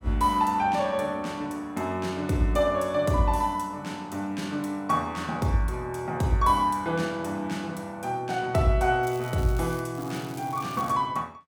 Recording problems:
crackle; at 9 s and at 10 s; loose cable, SNR 21 dB

